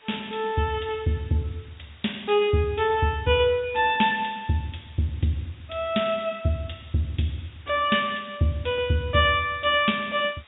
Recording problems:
low-pass filter; nothing above 4 kHz
background hiss; SNR 27 dB

